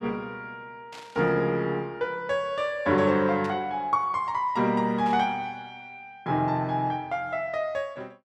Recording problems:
static burst; at 1 s, at 3.5 s and at 5 s; peak -13 dB vs average level

